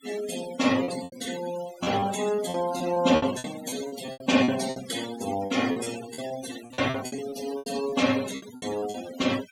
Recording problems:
denoising artefacts; signal-to-artefact ratio 12 dB
lost packets; 14% of the sound replaced, filled with repeated pitch periods

